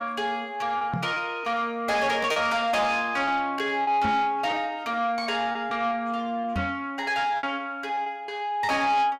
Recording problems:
distortion; soft clipping, signal-to-distortion ratio 12 dB
packet loss; 5% of the sound replaced, filled with repeated pitch periods
microphone bump; at 1 s, at 4 s and at 6.5 s; peak +1 dB vs average level

